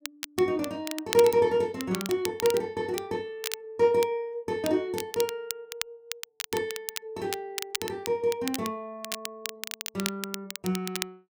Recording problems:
crackling; vinyl, SNR 8 dB

